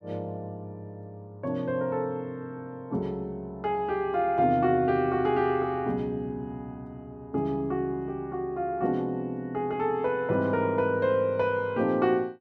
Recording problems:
none

